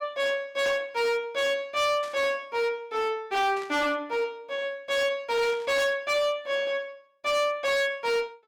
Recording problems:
distorted audio; hard clipping, signal-to-distortion ratio 10 dB
static burst; at 2 s, at 3.5 s and at 5.5 s; peak -12 dB vs average level

